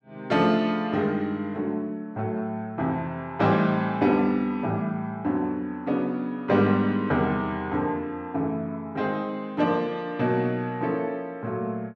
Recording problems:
none

